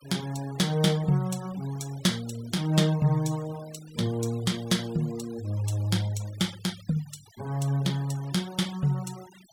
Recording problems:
noise reduction artefacts; signal-to-artefact ratio 19 dB

